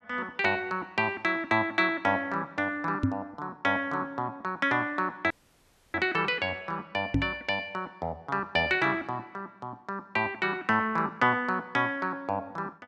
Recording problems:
microphone thump; at 3 s and at 7 s; peak +6 dB vs average level
dropout; at 5.5 s for 0.5 s

